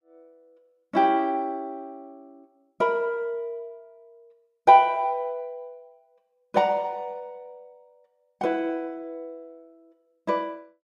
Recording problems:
none

